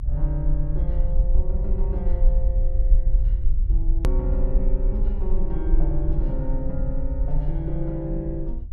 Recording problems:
low-frequency rumble; below 46 Hz, strongest tone 24 Hz, SNR -6 dB
hard cut with a click; at 4 s

